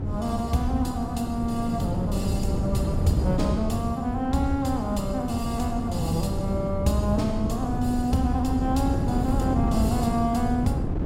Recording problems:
wind on the microphone; below 220 Hz, SNR 1 dB

